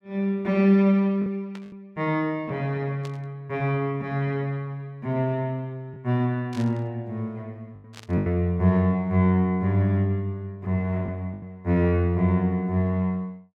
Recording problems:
packet loss; 3% of the sound replaced, filled with the last packet
static burst; 4 times, first at 1.5 s; peak -14 dB vs average level

